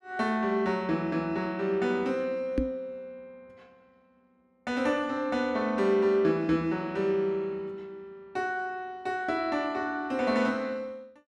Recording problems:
microphone bump; at 2.5 s; peak +5 dB vs average level

